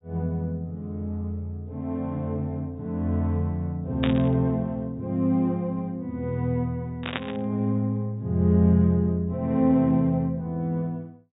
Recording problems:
low-pass filter; nothing above 4 kHz
static burst; at 4 s and at 7 s; peak +1 dB vs average level

